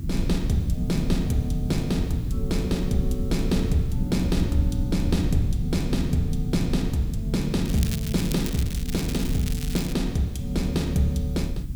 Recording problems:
hiss; slope -1 dB per octave, SNR 26 dB
rumble; below 120 Hz, SNR 4 dB
crackle; from 7.5 to 10 s; loose cable, SNR 10 dB

